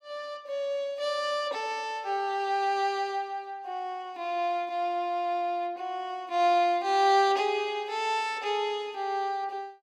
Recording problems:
none

